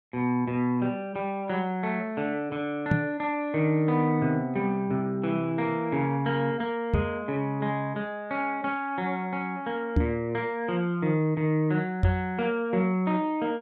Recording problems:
knock on the microphone; 4 times, first at 3 s; peak +8 dB vs average level

